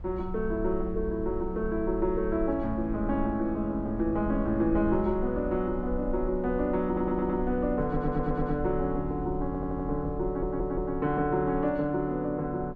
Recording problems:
low-frequency rumble; below 56 Hz, SNR 12 dB
stutter; 4 times, first at 7 s

